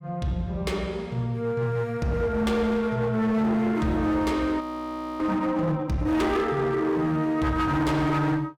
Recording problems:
distortion; hard clipping, uneven, signal-to-distortion ratio 11 dB
frozen audio; at 4.5 s for 0.5 s

